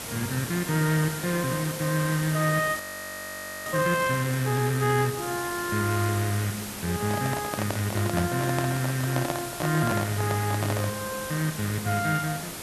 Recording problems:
hiss; slope -2 dB per octave, SNR 8 dB
frozen audio; at 3 s for 1 s
microphone handling noise; from 7 to 11 s; peak +1 dB vs average level

